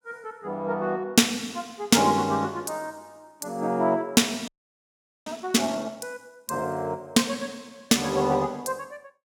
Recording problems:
frozen audio; at 4.5 s for 1 s

